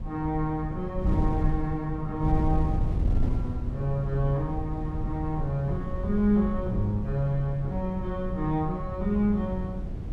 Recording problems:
wind noise; below 110 Hz, SNR 3 dB

